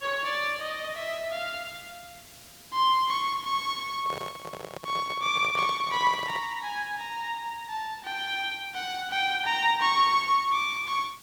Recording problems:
background hiss; SNR 22 dB
microphone handling noise; from 4 to 6.5 s; peak -7 dB vs average level

